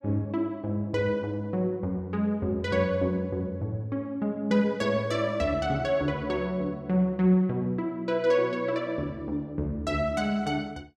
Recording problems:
none

